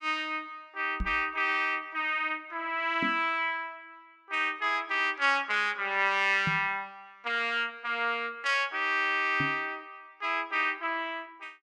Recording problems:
microphone bump; 4 times, first at 1 s; peak -1 dB vs average level

